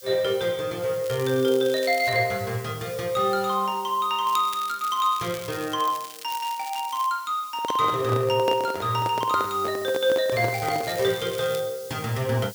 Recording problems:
background hiss; slope +5 dB per octave, SNR 18 dB
crackling; from 1 to 2 s, from 4.5 to 7 s and from 11 to 12 s; loose cable, SNR 16 dB
handling noise; from 7.5 to 11 s; peak -2 dB vs average level

